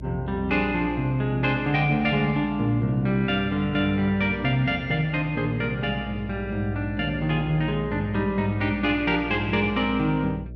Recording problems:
hum; 60 Hz, harmonics up to 600 Hz, SNR 15 dB

